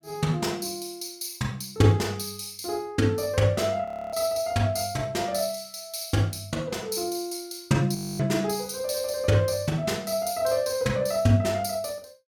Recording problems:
audio freezing; at 4 s and at 8 s

